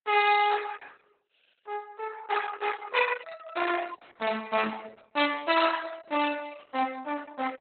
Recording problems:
codec artefacts; Opus, then Opus, log-spectral distance 6 dB, nothing above 4.1 kHz

